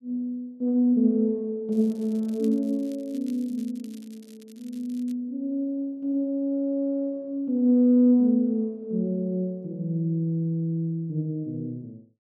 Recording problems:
crackling; from 1.5 to 5 s; loose cable, SNR 29 dB

